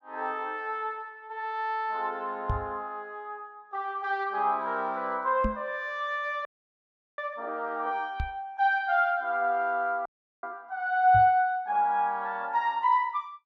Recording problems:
microphone bump; 4 times, first at 2.5 s; peak +1 dB vs average level
audio freezing; at 6.5 s for 0.5 s and at 10 s

